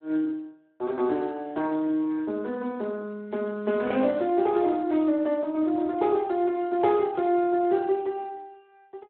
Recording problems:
telephone audio; 220 Hz to 2.8 kHz, Speex

